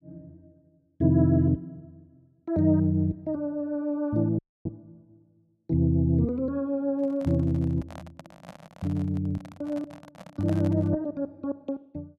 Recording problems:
dropout; at 4.5 s
microphone handling noise; from 7 to 11 s; peak -10 dB vs average level

